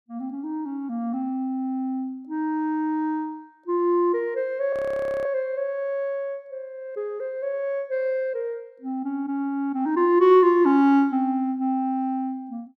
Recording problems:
frozen audio; at 4.5 s for 0.5 s

